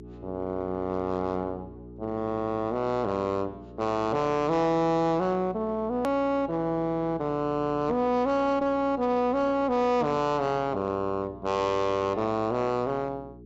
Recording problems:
treble missing; nothing above 8 kHz
distorted audio; hard clipping, uneven, signal-to-distortion ratio 10 dB
hum; 60 Hz, harmonics up to 420 Hz, SNR 19 dB
click at an edit; at 6 s

